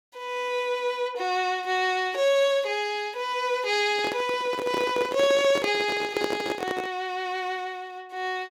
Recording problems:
handling noise; from 4 to 7 s; peak +2 dB vs average level

